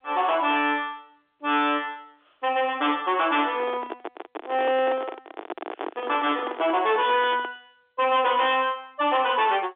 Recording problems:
telephone audio; 260 Hz to 3.6 kHz, G.711
distorted audio; hard clipping, signal-to-distortion ratio 11 dB
microphone handling noise; from 3.5 to 7.5 s; peak -4 dB vs average level

